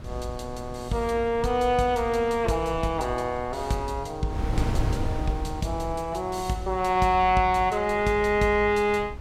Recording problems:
wind noise; below 170 Hz, SNR 11 dB

